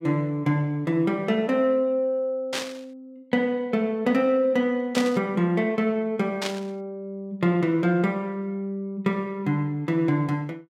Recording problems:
burst of static; at 2.5 s, at 5 s and at 6.5 s; peak 0 dB vs average level

